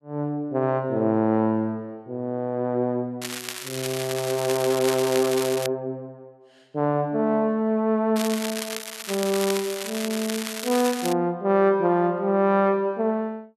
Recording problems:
crackling; from 3 to 5.5 s and from 8 to 11 s; loose cable, SNR 8 dB

